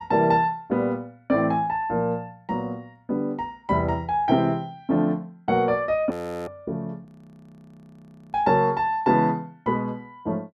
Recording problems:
audio freezing; at 6 s and at 7 s for 1.5 s

